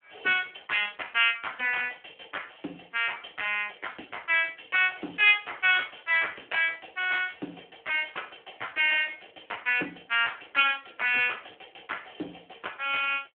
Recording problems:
telephone audio; 240 Hz to 3.3 kHz, Speex

